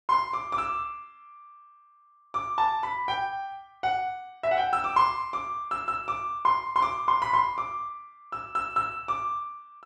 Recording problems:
none

